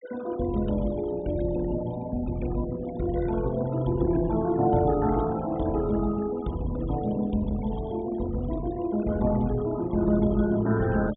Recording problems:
treble cut off; nothing above 4 kHz
denoising artefacts; signal-to-artefact ratio 18 dB

